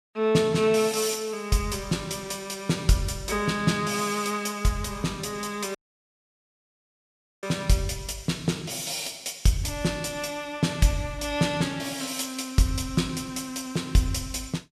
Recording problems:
dropout; at 6 s for 1.5 s

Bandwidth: 15.5 kHz